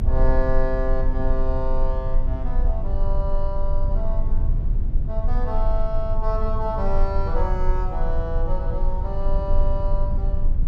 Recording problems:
rumble; below 42 Hz, strongest tone 20 Hz, SNR -4 dB

